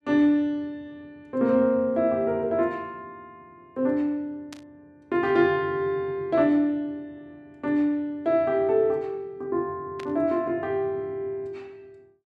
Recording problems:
static burst; at 4.5 s and at 10 s; peak -12 dB vs average level

